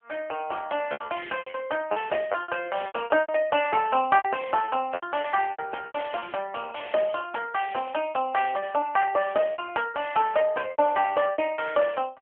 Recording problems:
telephone audio; 300 Hz to 3.1 kHz, AMR-NB
packet loss; 16% of the sound replaced, filled with repeated pitch periods

